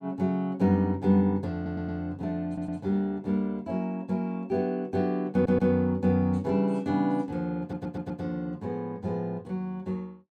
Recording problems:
audio stuttering; 4 times, first at 1.5 s

